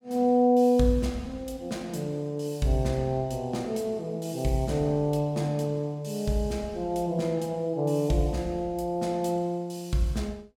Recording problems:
none

